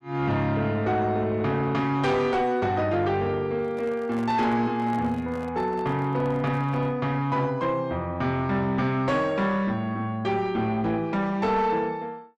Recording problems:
distorted audio; soft clipping, signal-to-distortion ratio 11 dB
microphone handling noise; from 3.5 to 7 s; peak -11 dB vs average level

